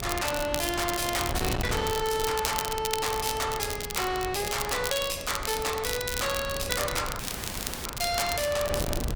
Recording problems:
distortion; hard clipping, signal-to-distortion ratio 7 dB
wind on the microphone; below 580 Hz, SNR 8 dB
crackling; vinyl, SNR 5 dB
dropout; at 7 s for 0.5 s

